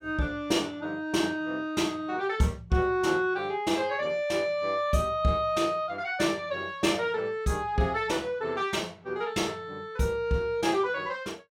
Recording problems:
none

